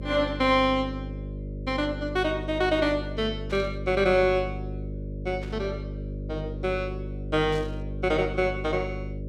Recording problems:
hum; 50 Hz, harmonics up to 600 Hz, SNR 8 dB
burst of static; at 3.5 s, at 5.5 s and at 7.5 s; peak -14 dB vs average level

